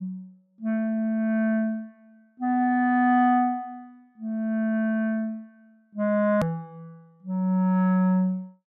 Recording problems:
click at an edit; at 6.5 s

